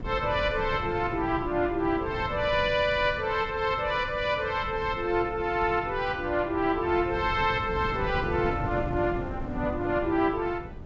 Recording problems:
treble cut off; nothing above 8 kHz
wind on the microphone; below 250 Hz, SNR 11 dB

